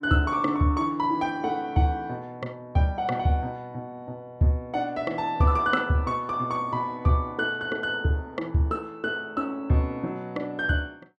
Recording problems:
none

